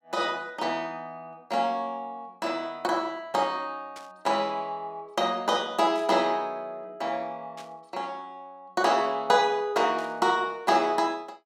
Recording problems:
static burst; 4 times, first at 4 s; peak -13 dB vs average level

